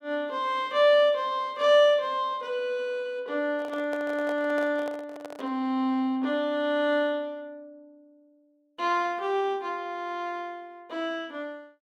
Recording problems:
handling noise; from 3.5 to 5.5 s; peak -7 dB vs average level

